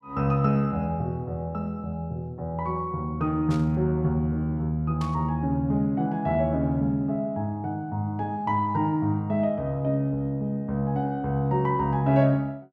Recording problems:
burst of static; at 3.5 s and at 5 s; peak -12 dB vs average level

